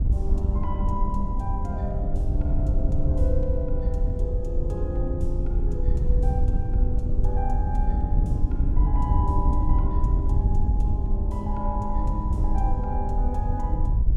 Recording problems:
wind noise; below 72 Hz, SNR -6 dB

